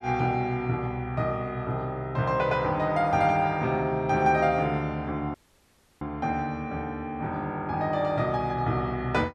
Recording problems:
dropout; at 5.5 s for 0.5 s

